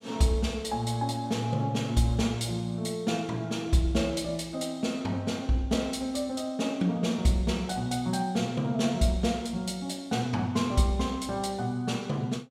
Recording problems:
none

